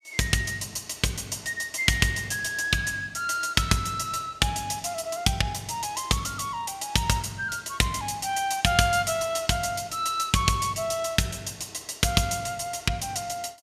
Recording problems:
none

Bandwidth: 15.5 kHz